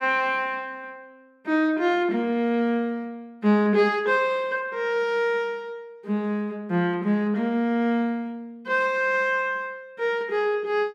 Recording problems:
none

